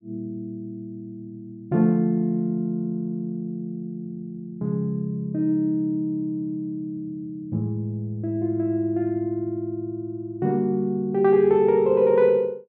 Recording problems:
none

